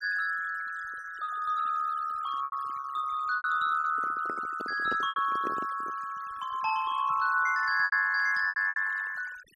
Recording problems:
denoising artefacts; signal-to-artefact ratio 20 dB
lost packets; 8% of the sound replaced, filled with repeated pitch periods
microphone handling noise; from 4 to 6 s; peak -5 dB vs average level

